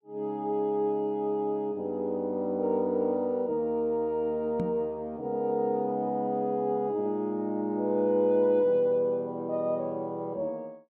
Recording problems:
microphone thump; at 4.5 s; peak 0 dB vs average level

